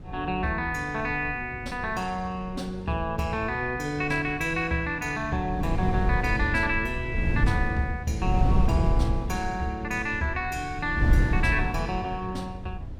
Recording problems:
wind noise; below 120 Hz, SNR 1 dB

